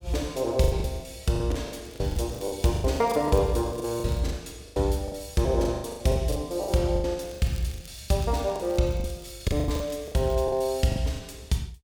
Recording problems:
lost packets; 16% of the sound replaced, filled with the last packet
crackling; from 2 to 4 s and from 7 to 11 s; loose cable, SNR 23 dB

